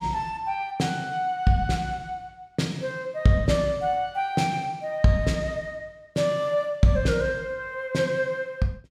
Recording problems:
none

